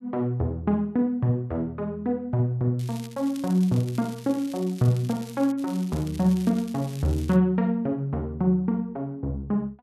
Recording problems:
crackle; from 3 to 5.5 s and from 5.5 to 7.5 s; loose cable, SNR 20 dB

